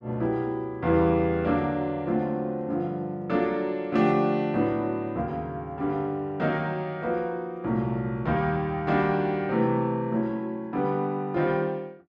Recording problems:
none

